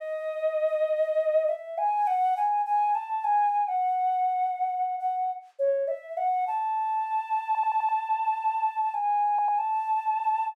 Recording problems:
audio stuttering; at 7.5 s and at 9.5 s

